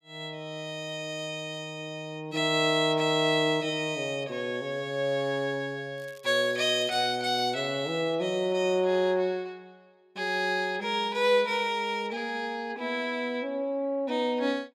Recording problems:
crackle; at 6 s; loose cable, SNR 27 dB

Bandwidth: 14.5 kHz